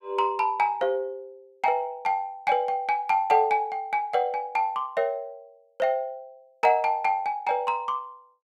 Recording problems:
none

